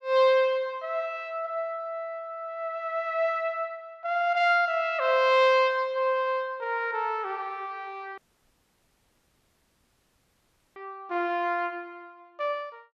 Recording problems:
audio cutting out; at 8 s for 2.5 s

